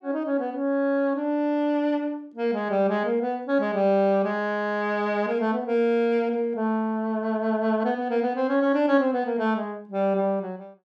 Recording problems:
none

